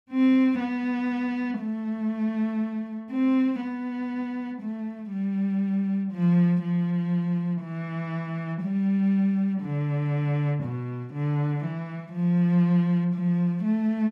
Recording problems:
none

